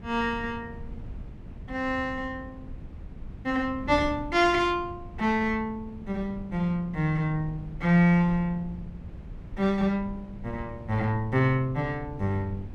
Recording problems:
wind noise; below 150 Hz, SNR 15 dB

